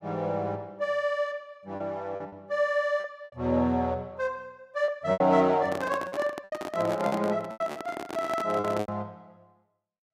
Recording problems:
lost packets; 8% of the sound replaced, filled with repeated pitch periods
microphone handling noise; from 5.5 to 9 s; peak -1 dB vs average level

